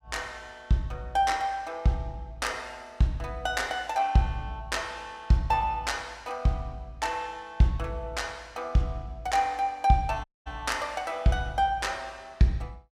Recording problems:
audio cutting out; at 10 s

